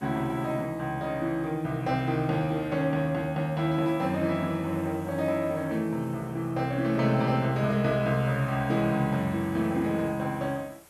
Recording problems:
background hiss; SNR 27 dB

